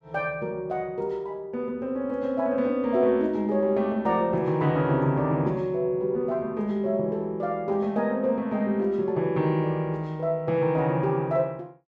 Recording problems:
none

